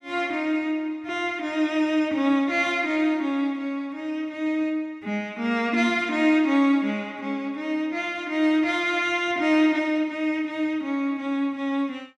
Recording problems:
none

